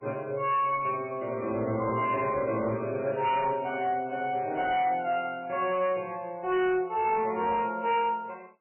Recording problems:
codec artefacts; MP3, log-spectral distance 3 dB, nothing above 3 kHz
distortion; hard clipping, uneven, signal-to-distortion ratio 11 dB

